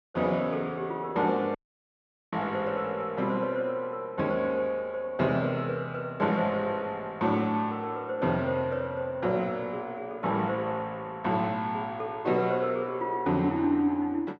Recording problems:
dropout; at 1.5 s for 1 s

